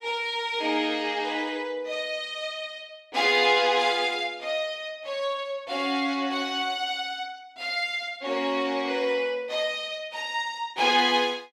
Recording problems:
none

